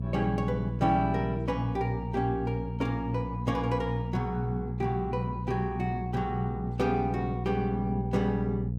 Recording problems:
hum; 60 Hz, harmonics up to 480 Hz, SNR 3 dB

